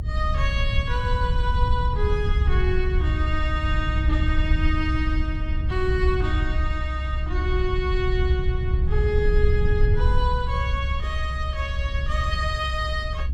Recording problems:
low-frequency rumble; below 76 Hz, SNR -3 dB

